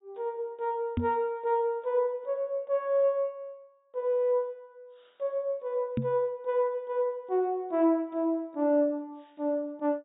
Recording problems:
treble cut off; nothing above 4 kHz
microphone thump; at 1 s and at 6 s; peak +3 dB vs average level

